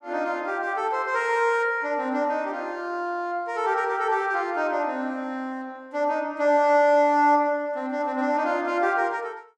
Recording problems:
none

